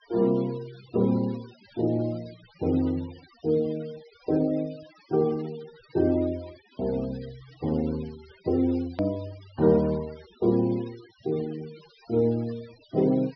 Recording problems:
low-pass filter; nothing above 5.5 kHz
noise reduction artefacts; signal-to-artefact ratio 23 dB
click at an edit; at 9 s

